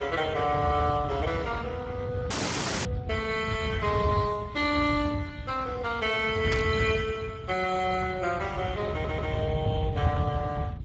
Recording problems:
codec artefacts; Speex, log-spectral distance 4 dB, nothing above 7.3 kHz
rumble; below 140 Hz, SNR 5 dB
audio cutting out; at 2.5 s for 0.5 s
burst of static; at 6.5 s; peak +1 dB vs average level
stutter; at 9 s

